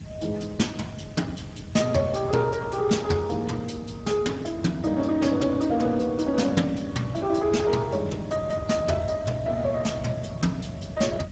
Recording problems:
lossy compression; Speex, log-spectral distance 5 dB, nothing above 7.6 kHz
background hiss; SNR 27 dB
rumble; below 200 Hz, SNR 14 dB

